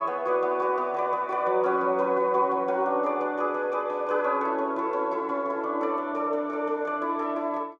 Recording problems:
none

